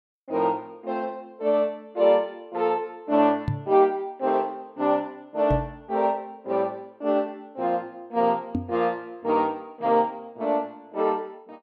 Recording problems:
knock on the microphone; at 3.5 s, at 5.5 s and at 8.5 s; peak +2 dB vs average level

